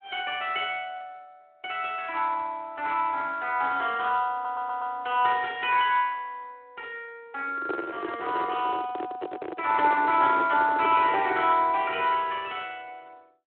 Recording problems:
phone line; 280 Hz to 3.3 kHz, Speex
stutter; at 4.5 s
handling noise; from 7.5 to 11 s; peak -1 dB vs average level

